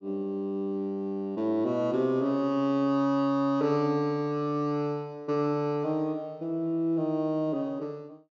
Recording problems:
treble cut off; nothing above 8 kHz

